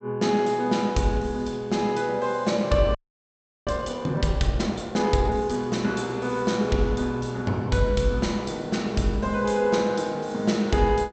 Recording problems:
treble cut off; nothing above 8 kHz
audio freezing; at 3 s for 0.5 s

